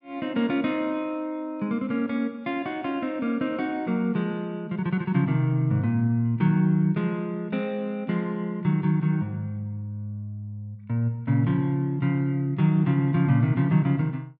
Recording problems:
none

